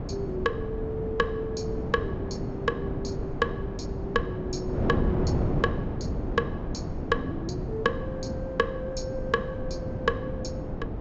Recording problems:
low-pass filter; nothing above 8 kHz
wind on the microphone; below 340 Hz, SNR 1 dB

